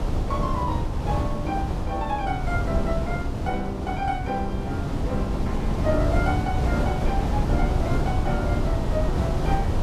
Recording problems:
wind noise; below 220 Hz, SNR -3 dB

